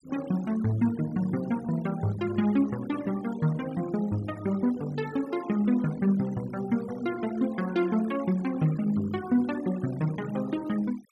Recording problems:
noise reduction artefacts; signal-to-artefact ratio 19 dB

